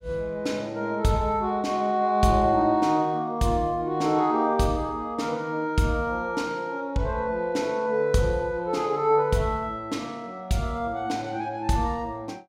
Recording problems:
none

